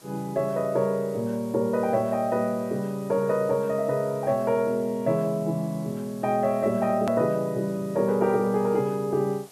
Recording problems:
hiss; SNR 24 dB
edit click; at 7 s

